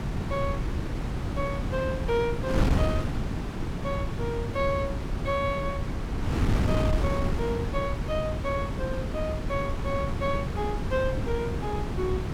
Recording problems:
wind on the microphone; below 260 Hz, SNR -1 dB

